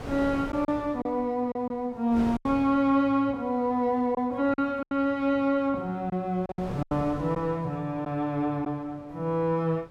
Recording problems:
wind on the microphone; below 650 Hz, SNR 15 dB
packet loss; 6% of the sound replaced, filled with silence

